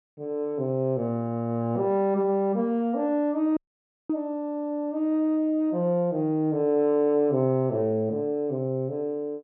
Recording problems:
dropout; at 3.5 s for 0.5 s

